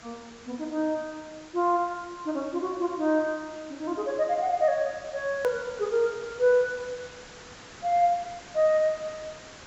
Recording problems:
low-pass filter; nothing above 7.6 kHz
background hiss; slope -2 dB per octave, SNR 19 dB
hard cut with a click; at 5.5 s

